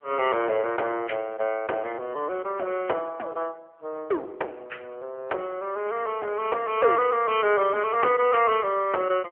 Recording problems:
telephone audio; 320 Hz to 3.5 kHz, AMR-NB

